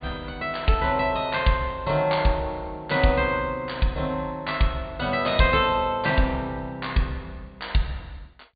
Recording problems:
treble missing; nothing above 4.7 kHz

